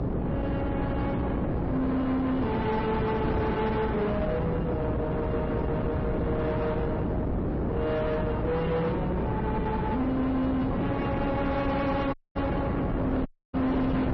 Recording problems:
lossy codec; AAC, then MP3, log-spectral distance 2 dB, nothing above 5.7 kHz
distortion; soft clipping, signal-to-distortion ratio 8 dB
electrical hum; 60 Hz, harmonics up to 600 Hz, SNR 5 dB
wind noise; below 490 Hz, SNR 1 dB
audio cutting out; at 12 s and at 13 s

